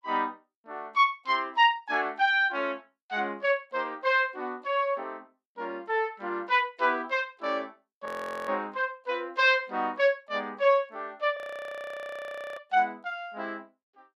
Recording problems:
audio freezing; at 8 s and at 11 s for 1 s

